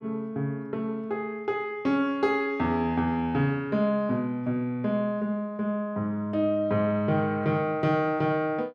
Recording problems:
none

